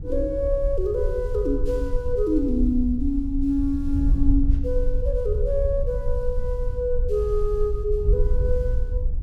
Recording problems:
wind on the microphone; below 60 Hz, SNR 2 dB

